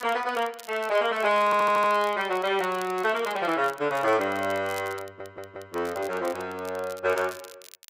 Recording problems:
crackling; vinyl, SNR 21 dB
stutter; at 1.5 s and at 5 s

